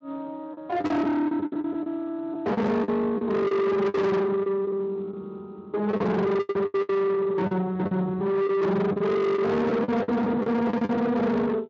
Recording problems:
lossy codec; Speex, log-spectral distance 2 dB, nothing above 7.3 kHz
distortion; soft clipping, signal-to-distortion ratio 7 dB
lost packets; 12% of the sound replaced, filled with the last packet

